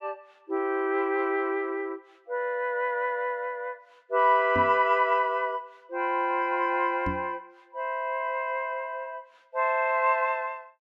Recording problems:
knock on the microphone; at 4.5 s and at 7 s; peak -2 dB vs average level

